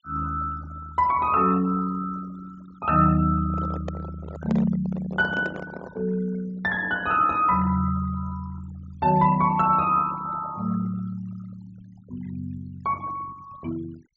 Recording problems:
treble missing; nothing above 8 kHz
denoising artefacts; signal-to-artefact ratio 21 dB
microphone handling noise; from 3.5 to 6 s; peak -4 dB vs average level

